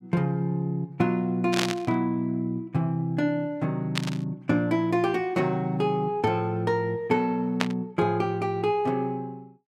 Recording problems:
static burst; at 1.5 s, at 4 s and at 7.5 s; peak +4 dB vs average level

